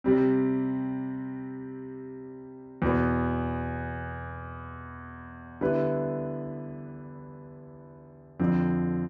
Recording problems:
none

